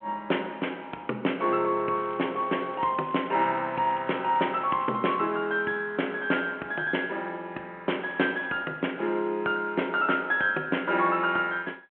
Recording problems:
telephone audio; 240 Hz to 3.3 kHz, G.726
crackle; from 2 to 5 s and at 8 s; loose cable, SNR 27 dB

